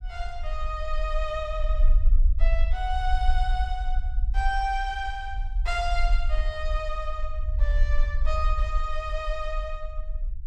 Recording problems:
rumble; below 46 Hz, SNR -3 dB

